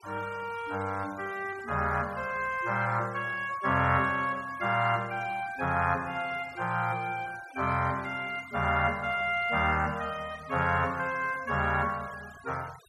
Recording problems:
noise reduction artefacts; signal-to-artefact ratio 21 dB

